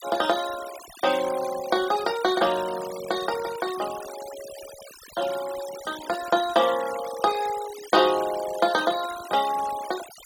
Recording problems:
denoising artefacts; signal-to-artefact ratio 14 dB

